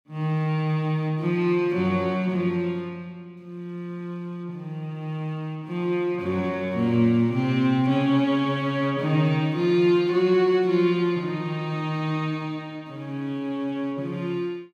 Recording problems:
none

